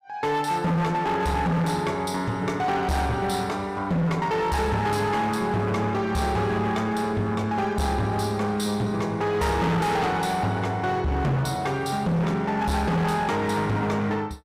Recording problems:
distortion; hard clipping, uneven, signal-to-distortion ratio 8 dB

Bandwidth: 15.5 kHz